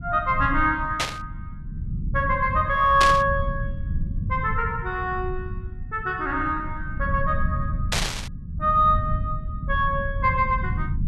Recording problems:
low-frequency rumble; below 120 Hz, SNR 7 dB
static burst; at 1 s, at 3 s and at 8 s; peak +4 dB vs average level

